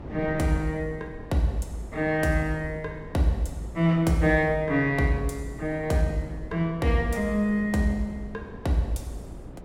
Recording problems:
wind noise; below 350 Hz, SNR 16 dB

